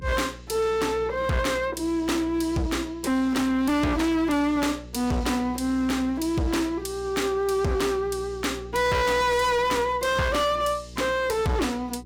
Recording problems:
distorted audio; hard clipping, signal-to-distortion ratio 6 dB
hum; 60 Hz, harmonics up to 480 Hz, SNR 18 dB

